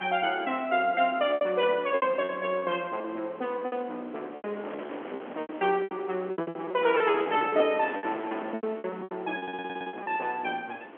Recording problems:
telephone audio; 240 Hz to 3.3 kHz, G.711
wind on the microphone; below 1.3 kHz, SNR 15 dB
lost packets; 16% of the sound replaced, filled with repeated pitch periods
audio stuttering; at 9.5 s

